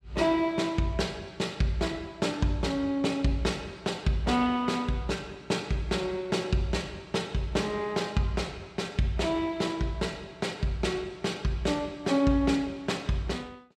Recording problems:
none

